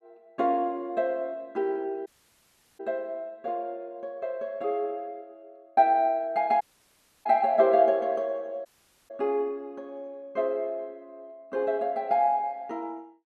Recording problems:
dropout; at 2 s for 0.5 s, at 6.5 s for 0.5 s and at 8.5 s

